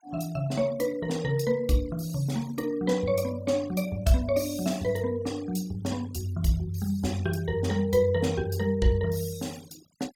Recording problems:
noise reduction artefacts; signal-to-artefact ratio 20 dB

